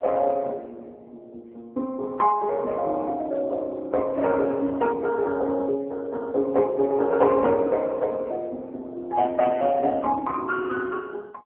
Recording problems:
telephone audio; 240 Hz to 3.3 kHz, AMR-NB
static burst; at 7.5 s; peak -19 dB vs average level

